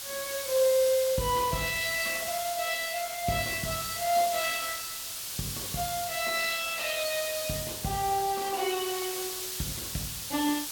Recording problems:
lossy compression; MP3, then Opus, log-spectral distance 4 dB
background hiss; slope +3 dB per octave, SNR 4 dB

